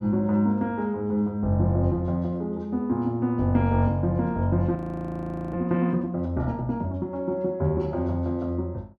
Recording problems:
frozen audio; at 5 s for 1 s

